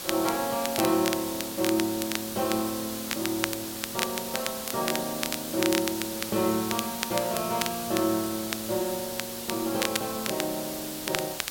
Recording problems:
hiss; slope -1 dB per octave, SNR 5 dB
crackle; vinyl, SNR 5 dB

